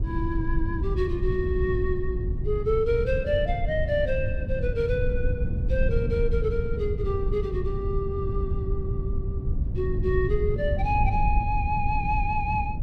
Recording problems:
low-frequency rumble; below 100 Hz, SNR 1 dB

